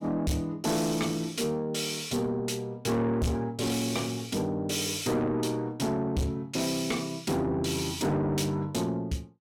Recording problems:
distortion; soft clipping, signal-to-distortion ratio 7 dB

